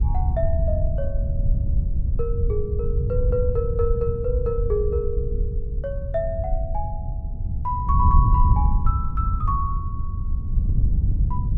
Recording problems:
wind noise; below 90 Hz, SNR -3 dB

